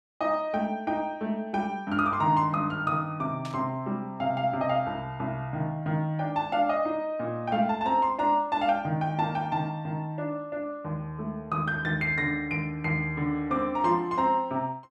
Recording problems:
burst of static; at 3.5 s; peak -10 dB vs average level

